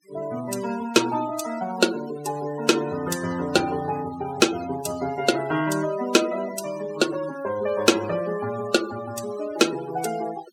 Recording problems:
noise reduction artefacts; signal-to-artefact ratio 14 dB

